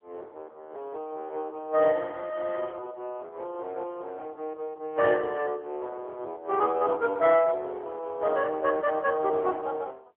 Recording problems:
phone line; 320 Hz to 3.5 kHz, AMR-NB

